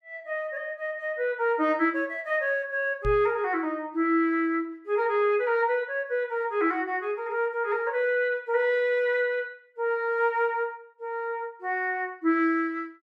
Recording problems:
microphone thump; at 3 s; peak -3 dB vs average level

